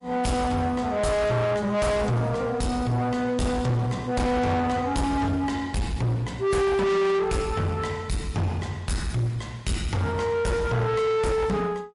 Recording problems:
codec artefacts; MP3, log-spectral distance 2 dB, nothing above 10.4 kHz
distortion; soft clipping, signal-to-distortion ratio 7 dB

